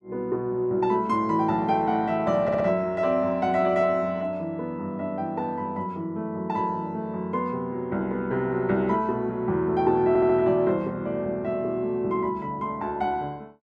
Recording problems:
audio stuttering; at 2.5 s and at 10 s

